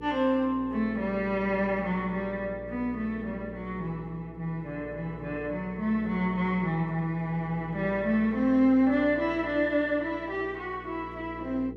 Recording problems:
electrical hum; 60 Hz, harmonics up to 480 Hz, SNR 15 dB

